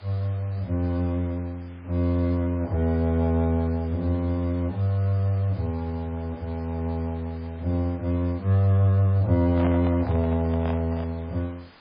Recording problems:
lossy compression; MP3, log-spectral distance 2 dB, nothing above 11 kHz
hiss; SNR 26 dB
handling noise; from 9.5 to 11 s; peak -4 dB vs average level

